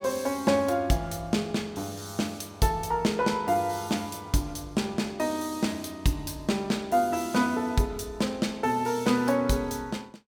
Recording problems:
none

